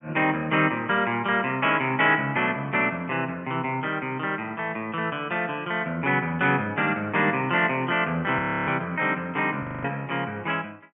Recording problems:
treble missing; nothing above 3.3 kHz
audio freezing; at 8.5 s and at 9.5 s

